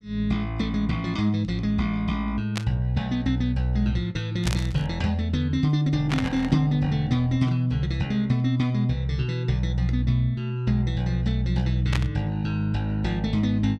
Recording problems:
burst of static; 4 times, first at 2.5 s; peak -1 dB vs average level

